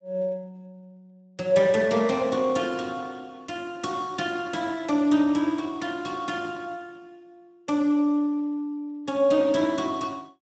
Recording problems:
codec artefacts; Speex, log-spectral distance 3 dB, nothing above 7.8 kHz

